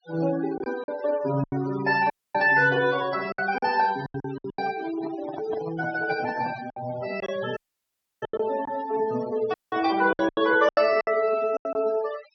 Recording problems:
treble cut off; nothing above 6.1 kHz
noise reduction artefacts; signal-to-artefact ratio 15 dB
packet loss; 10% of the sound replaced, filled with silence
dropout; at 2 s, at 7.5 s for 0.5 s and at 9.5 s
handling noise; from 5 to 6.5 s; peak -7 dB vs average level

